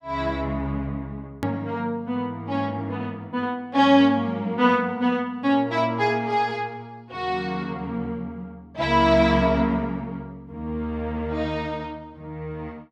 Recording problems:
edit click; at 1.5 s

